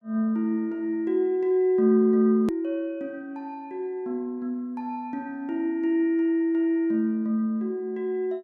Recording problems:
edit click; at 2.5 s

